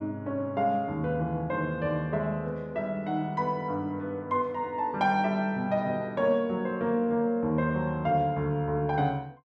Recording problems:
none

